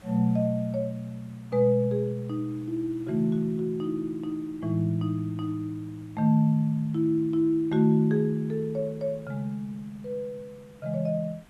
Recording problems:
background hiss; slope -5 dB per octave, SNR 28 dB

